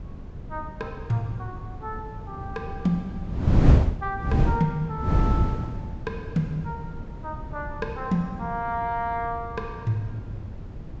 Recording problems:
low-pass filter; nothing above 8 kHz
wind on the microphone; below 170 Hz, SNR -2 dB

